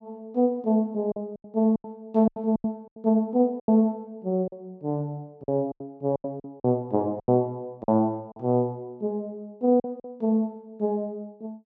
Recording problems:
lost packets; 10% of the sound replaced, filled with silence

